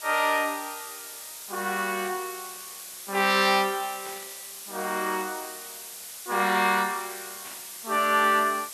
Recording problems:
background hiss; slope +2 dB per octave, SNR 12 dB
static burst; at 2 s, at 4 s and at 7.5 s; peak -16 dB vs average level

